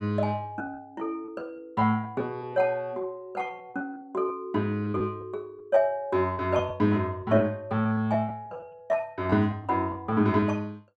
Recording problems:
lost packets; 8% of the sound replaced, filled with repeated pitch periods

